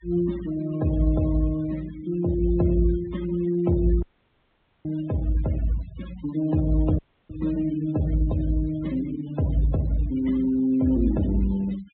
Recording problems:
low-pass filter; nothing above 4 kHz
noise reduction artefacts; signal-to-artefact ratio 19 dB
audio cutting out; at 4 s for 1 s and at 7 s

